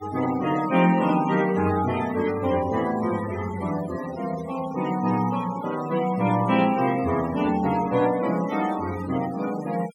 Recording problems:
noise reduction artefacts; signal-to-artefact ratio 14 dB

